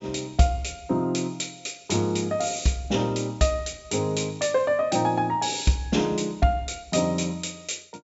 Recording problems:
treble cut off; nothing above 8 kHz

